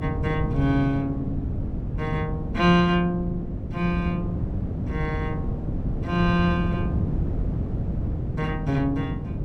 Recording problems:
hum; 50 Hz, harmonics up to 300 Hz, SNR 13 dB
wind noise; below 200 Hz, SNR 4 dB

